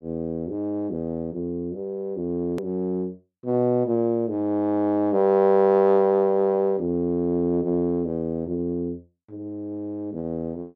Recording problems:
edit click; at 2.5 s

